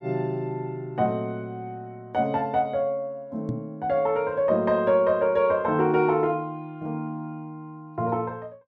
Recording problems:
microphone bump; at 3.5 s; peak -2 dB vs average level

